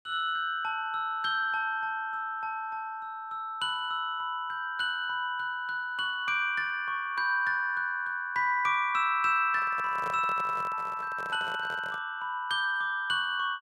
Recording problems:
microphone handling noise; from 9.5 to 12 s; peak -8 dB vs average level

